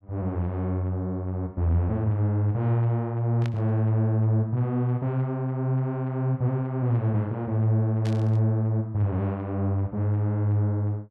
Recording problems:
static burst; at 3.5 s and at 8 s; peak -10 dB vs average level

